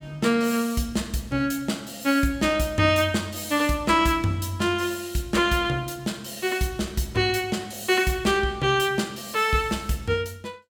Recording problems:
none

